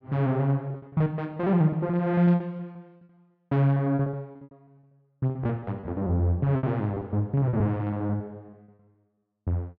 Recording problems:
packet loss; 18% of the sound replaced, filled with repeated pitch periods

